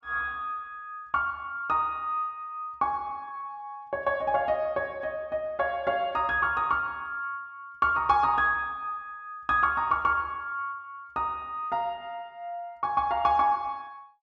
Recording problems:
none

